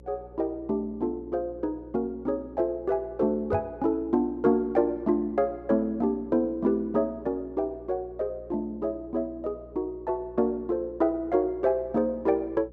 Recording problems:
mains hum; 60 Hz, harmonics up to 540 Hz, SNR 22 dB
microphone bump; at 3.5 s; peak -1 dB vs average level

